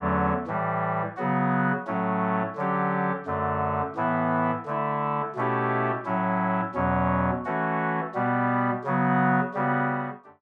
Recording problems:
none

